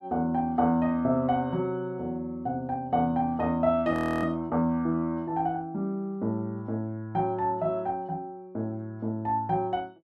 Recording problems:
frozen audio; at 4 s

